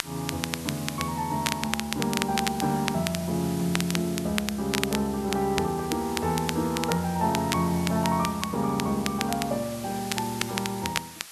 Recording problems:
background hiss; slope +3 dB per octave, SNR 13 dB
crackle; vinyl, SNR 6 dB

